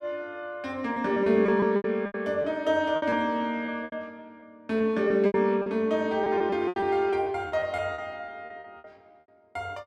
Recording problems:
lost packets; 12% of the sound replaced, filled with repeated pitch periods

